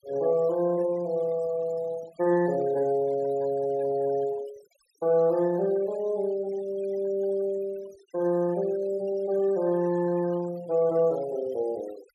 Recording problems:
noise reduction artefacts; signal-to-artefact ratio 23 dB

